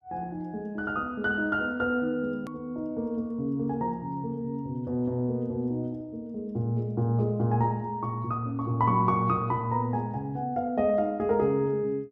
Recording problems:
edit click; at 2.5 s

